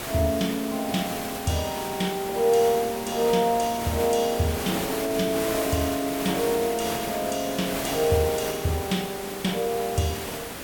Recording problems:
background hiss; slope -4 dB per octave, SNR 6 dB

